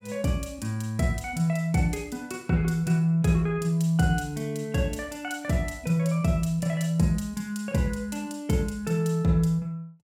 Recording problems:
none

